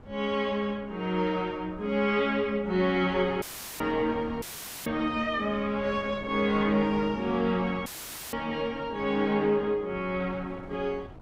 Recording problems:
wind on the microphone; below 580 Hz, SNR 18 dB
dropout; at 3.5 s, at 4.5 s and at 8 s; filled with static

